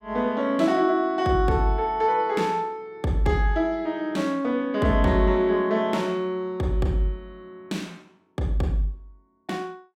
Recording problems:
none

